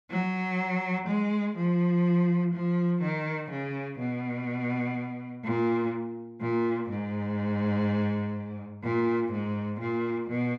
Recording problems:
none

